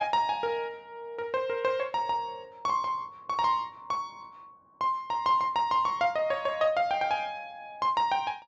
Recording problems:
treble cut off; nothing above 8 kHz

